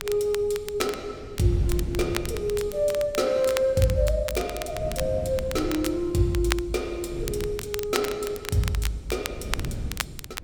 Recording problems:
wind noise; below 160 Hz, SNR 12 dB
crackling; vinyl, SNR 10 dB

